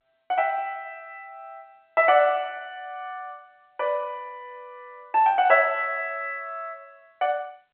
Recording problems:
telephone audio; 320 Hz to 3.3 kHz, G.711

